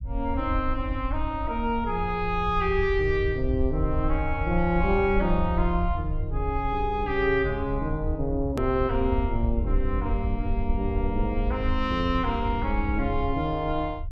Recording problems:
rumble; below 74 Hz, SNR 4 dB
hard cut with a click; at 8.5 s

